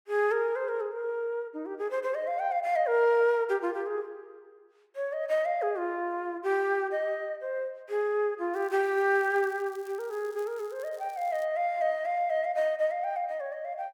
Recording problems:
crackling; from 8.5 to 11 s; loose cable, SNR 27 dB

